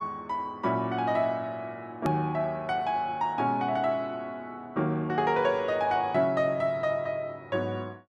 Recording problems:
edit click; at 2 s

